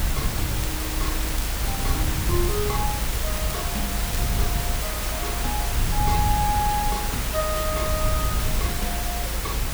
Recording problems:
background hiss; slope -2 dB per octave, SNR -3 dB
rumble; below 90 Hz, SNR -2 dB
crackling; at 0.5 s and from 1.5 to 4.5 s; loose cable, SNR 10 dB

